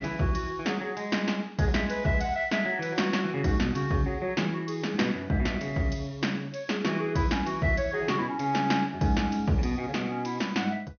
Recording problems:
treble missing; nothing above 6.3 kHz

